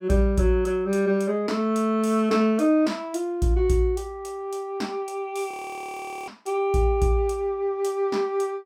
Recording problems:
frozen audio; at 5.5 s for 1 s

